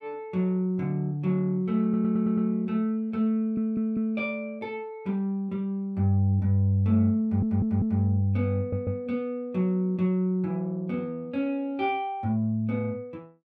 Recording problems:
audio stuttering; 4 times, first at 2 s

